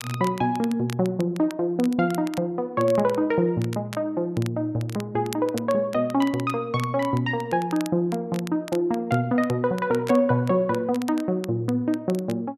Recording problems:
crackling; vinyl, SNR 19 dB

